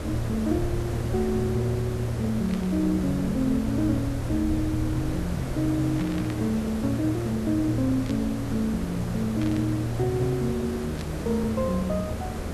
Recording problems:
hum; 50 Hz, harmonics up to 400 Hz, SNR 22 dB
background hiss; slope -7 dB per octave, SNR 8 dB
rumble; below 82 Hz, strongest tone 80 Hz, SNR 11 dB
burst of static; 5 times, first at 2.5 s; peak -9 dB vs average level

